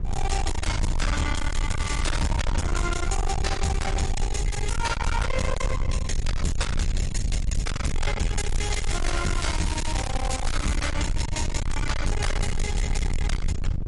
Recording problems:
lossy codec; MP3, log-spectral distance 2 dB, nothing above 11 kHz
distorted audio; hard clipping, signal-to-distortion ratio 6 dB
rumble; below 86 Hz, SNR 0 dB
crackling; at 2 s and from 8.5 to 11 s; loose cable, SNR 7 dB

